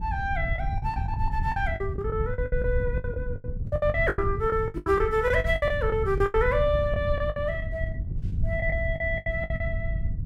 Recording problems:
rumble; below 98 Hz, SNR 5 dB
wind on the microphone; below 130 Hz, SNR 9 dB
lost packets; 17% of the sound replaced, filled with the last packet

